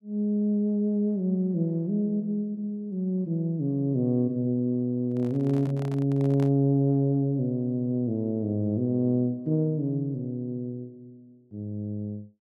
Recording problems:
handling noise; from 5 to 6.5 s; peak -11 dB vs average level

